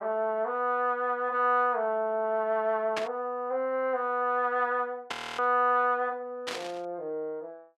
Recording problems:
static burst; at 3 s, at 5 s and at 6.5 s; peak -1 dB vs average level
audio freezing; at 5 s

